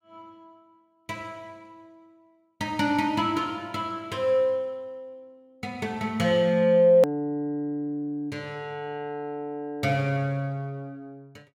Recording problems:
click at an edit; at 7 s

